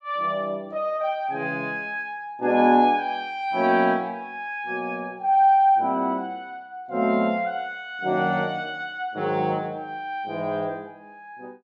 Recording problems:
none

